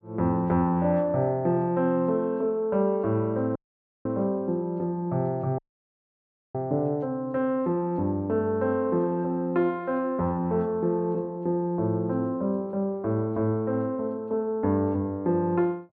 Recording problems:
audio cutting out; at 3.5 s and at 5.5 s for 1 s

